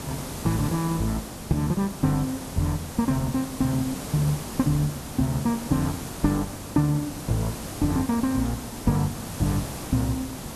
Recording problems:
background hiss; SNR 9 dB

